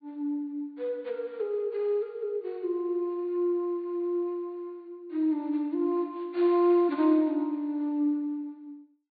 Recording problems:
treble cut off; nothing above 4.6 kHz

